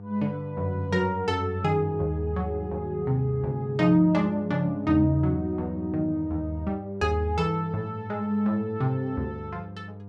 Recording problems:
hum; 50 Hz, harmonics up to 900 Hz, SNR 15 dB

